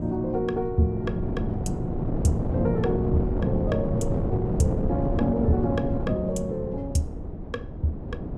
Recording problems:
wind on the microphone; below 300 Hz, SNR 2 dB

